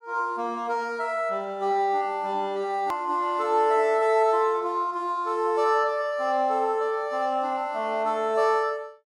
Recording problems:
edit click; at 3 s

